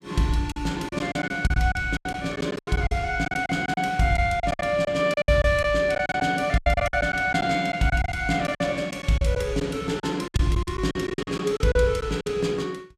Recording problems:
lost packets; 14% of the sound replaced, filled with silence

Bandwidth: 15 kHz